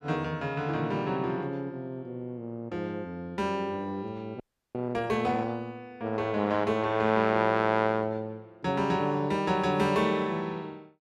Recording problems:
audio freezing; at 4.5 s

